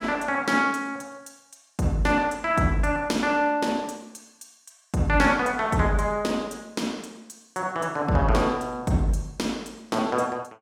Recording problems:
none

